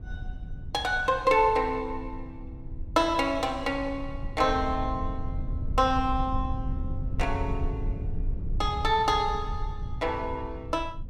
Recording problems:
rumble; below 90 Hz, SNR 8 dB

